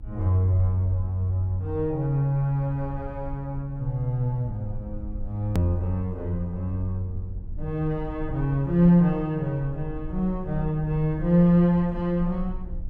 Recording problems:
low-frequency rumble; below 64 Hz, strongest tone 26 Hz, SNR 14 dB
hard cut with a click; at 5.5 s

